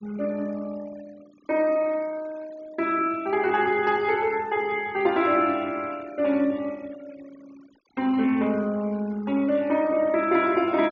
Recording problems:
treble cut off; nothing above 6.9 kHz
denoising artefacts; signal-to-artefact ratio 23 dB

